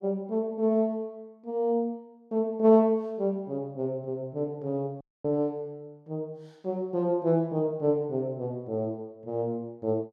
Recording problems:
dropout; at 5 s

